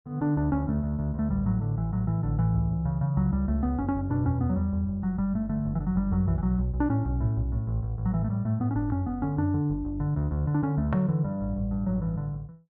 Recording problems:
none

